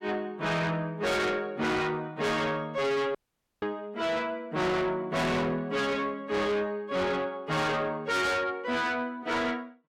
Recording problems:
distorted audio; soft clipping, signal-to-distortion ratio 6 dB
audio cutting out; at 3 s

